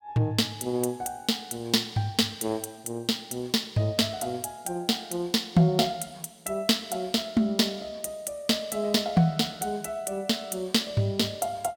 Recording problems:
none

